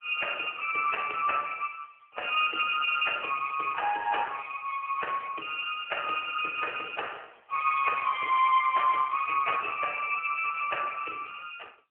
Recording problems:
telephone audio; 320 Hz to 3.3 kHz, AMR-NB

